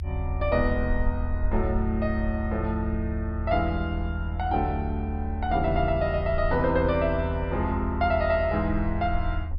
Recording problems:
treble missing; nothing above 5.5 kHz
low-frequency rumble; below 80 Hz, SNR 4 dB

